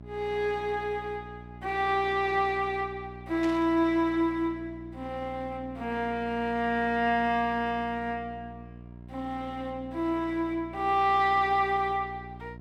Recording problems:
mains hum; 60 Hz, harmonics up to 1 kHz, SNR 17 dB
burst of static; at 3.5 s; peak -9 dB vs average level

